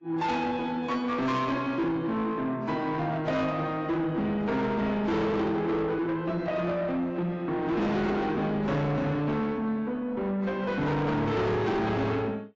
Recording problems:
lossy codec; AAC, log-spectral distance 2 dB, nothing above 7.3 kHz
distorted audio; soft clipping, signal-to-distortion ratio 8 dB

